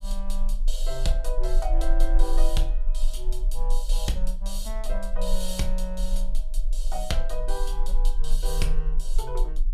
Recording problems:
rumble; below 32 Hz, strongest tone 22 Hz, SNR -5 dB

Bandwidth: 15 kHz